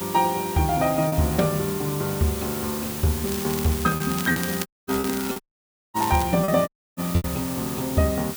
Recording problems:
background hiss; slope 0 dB per octave, SNR 8 dB
lost packets; 4% of the sound replaced, filled with repeated pitch periods
crackling; from 3.5 to 6 s; loose cable, SNR 11 dB
dropout; at 4.5 s, at 5.5 s for 0.5 s and at 6.5 s

